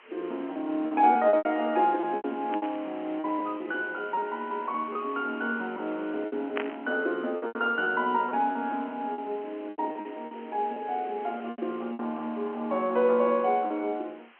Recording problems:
phone line; 240 Hz to 3.4 kHz, G.711
background hiss; SNR 23 dB
lost packets; 9% of the sound replaced, filled with repeated pitch periods
burst of static; at 2.5 s and at 6.5 s; peak 0 dB vs average level

